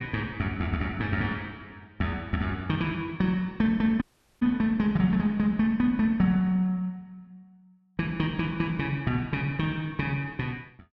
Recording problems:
audio cutting out; at 4 s

